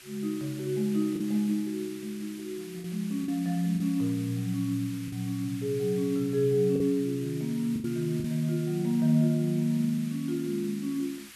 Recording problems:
hiss; SNR 18 dB
packet loss; 3% of the sound replaced, filled with the last packet

